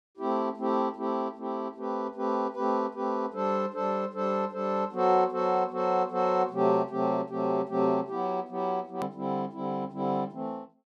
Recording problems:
hard cut with a click; at 9 s

